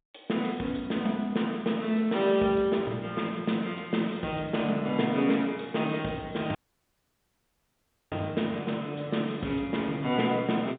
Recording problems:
telephone audio; 150 Hz to 3.7 kHz, G.711
dropout; at 6.5 s for 1.5 s

